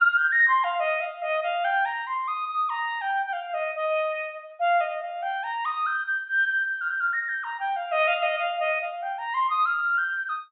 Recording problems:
low-pass filter; nothing above 4 kHz

